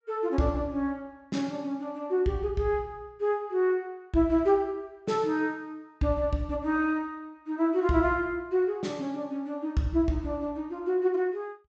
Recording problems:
low-pass filter; nothing above 8 kHz

